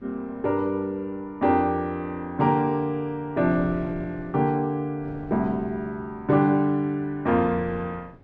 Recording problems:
wind noise; below 390 Hz, SNR 20 dB

